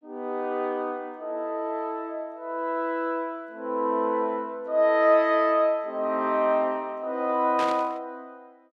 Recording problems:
static burst; at 7.5 s; peak -5 dB vs average level

